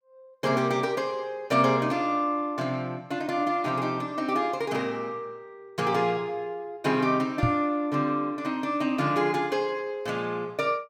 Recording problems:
microphone bump; at 7.5 s; peak +6 dB vs average level

